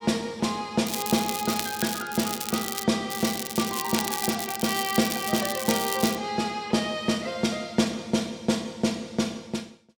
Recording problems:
crackle; from 1 to 3 s and from 3 to 6 s; loose cable, SNR 4 dB

